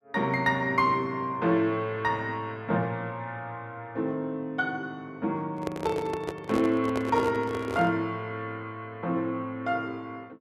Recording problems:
handling noise; from 5.5 to 8 s; peak 0 dB vs average level

